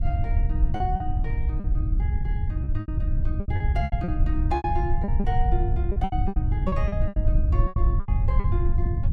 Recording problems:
rumble; below 90 Hz, SNR -8 dB
lost packets; 13% of the sound replaced, filled with repeated pitch periods

